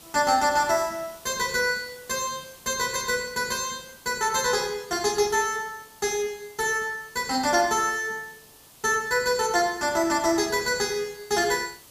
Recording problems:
hiss; SNR 23 dB

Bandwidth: 15 kHz